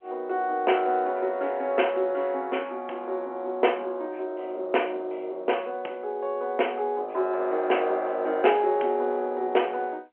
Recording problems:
phone line; 300 Hz to 3.2 kHz, G.711

